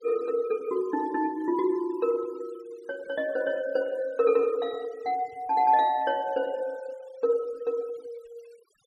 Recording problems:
denoising artefacts; signal-to-artefact ratio 25 dB

